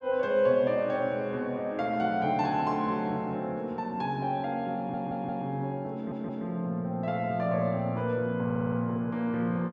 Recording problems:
audio stuttering; at 5 s, at 6 s and at 8.5 s

